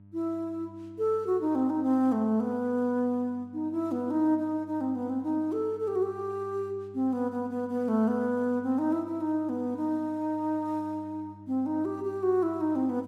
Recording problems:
electrical hum; 50 Hz, harmonics up to 600 Hz, SNR 22 dB

